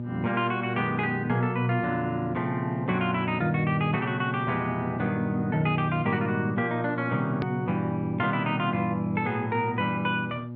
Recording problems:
low-pass filter; nothing above 5.5 kHz
hum; 60 Hz, harmonics up to 840 Hz, SNR 7 dB
click at an edit; at 7.5 s

